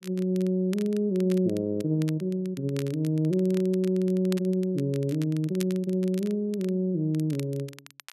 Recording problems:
crackle; vinyl, SNR 21 dB

